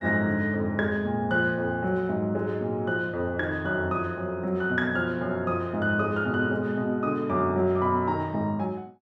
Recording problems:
none

